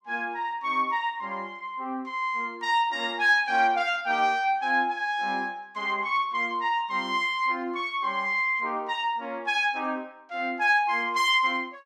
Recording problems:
none

